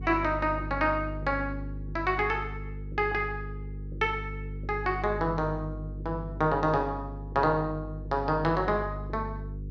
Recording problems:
electrical hum; 50 Hz, harmonics up to 450 Hz, SNR 9 dB

